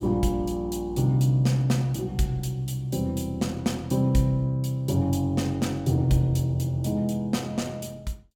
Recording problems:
none

